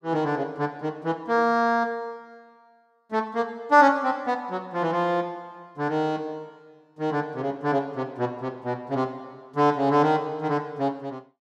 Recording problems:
none

